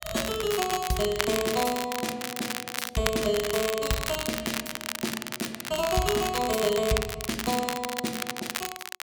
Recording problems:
crackle; vinyl, SNR 3 dB

